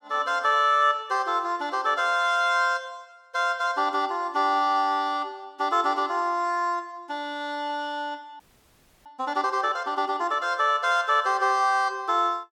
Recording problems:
frozen audio; at 8.5 s for 0.5 s

